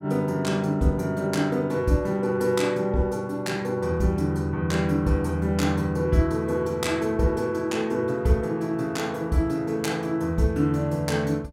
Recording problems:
none

